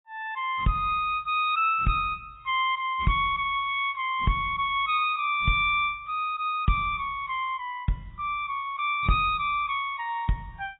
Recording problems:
lossy compression; AAC, log-spectral distance 2 dB, nothing above 3.2 kHz

